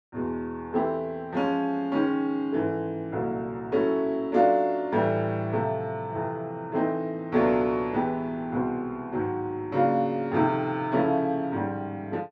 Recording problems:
none

